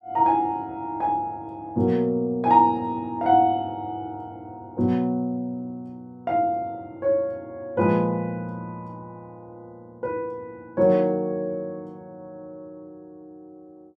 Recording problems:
none

